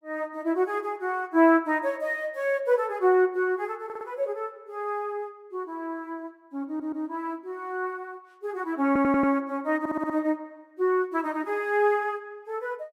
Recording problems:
stutter; 4 times, first at 4 s

